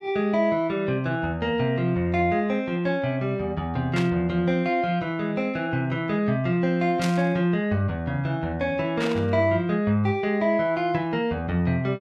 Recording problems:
static burst; at 4 s, at 7 s and at 9 s; peak -3 dB vs average level

